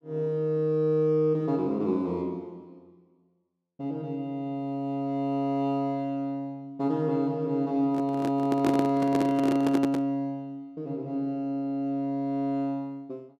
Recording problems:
microphone handling noise; from 8 to 10 s; peak +4 dB vs average level

